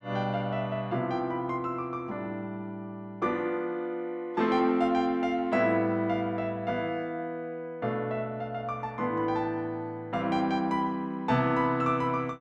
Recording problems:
none

